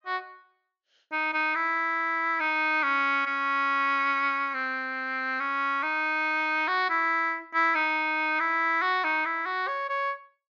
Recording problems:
low-pass filter; nothing above 6.9 kHz

